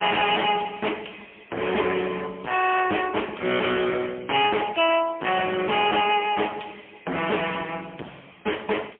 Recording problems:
telephone audio; 320 Hz to 3.3 kHz, AMR-NB, then MP3
distortion; hard clipping, signal-to-distortion ratio 6 dB

